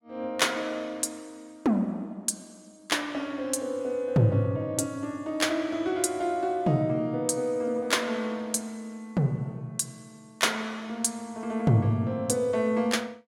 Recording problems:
none

